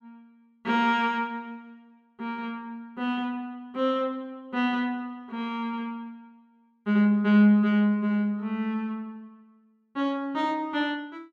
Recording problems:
none

